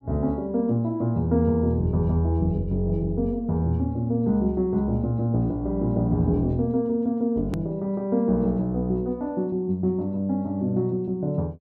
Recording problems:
edit click; at 7.5 s

